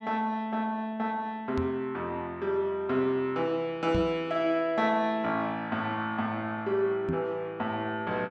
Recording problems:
knock on the microphone; at 1.5 s, at 4 s and at 7 s; peak +2 dB vs average level

